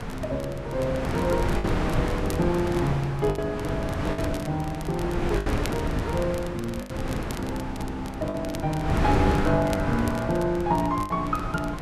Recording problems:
wind noise; below 570 Hz, SNR 2 dB
crackle; vinyl, SNR 17 dB
packet loss; 5% of the sound replaced, filled with the last packet

